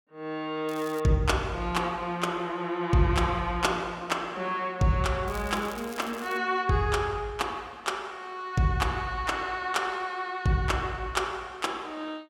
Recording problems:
crackling; at 0.5 s and from 5.5 to 6.5 s; loose cable, SNR 19 dB

